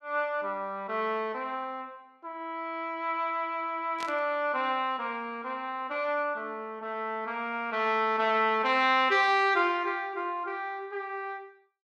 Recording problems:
burst of static; at 4 s; peak -6 dB vs average level

